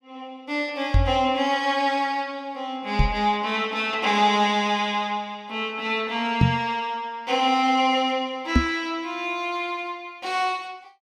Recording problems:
microphone bump; 4 times, first at 1 s; peak +9 dB vs average level

